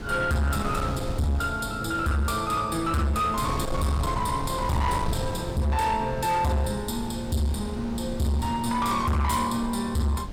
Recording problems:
distorted audio; soft clipping, signal-to-distortion ratio 7 dB
wind on the microphone; below 310 Hz, SNR 8 dB

